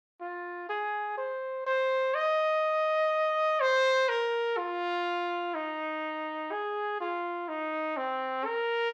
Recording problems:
none

